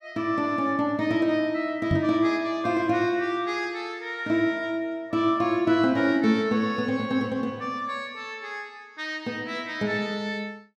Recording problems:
knock on the microphone; at 2 s; peak +5 dB vs average level

